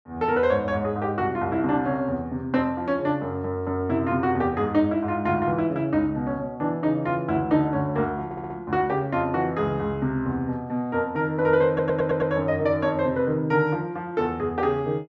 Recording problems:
stutter; at 8.5 s and at 12 s

